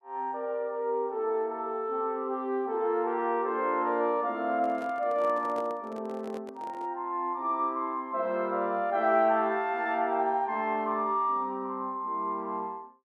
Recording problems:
handling noise; from 4.5 to 7 s; peak -10 dB vs average level

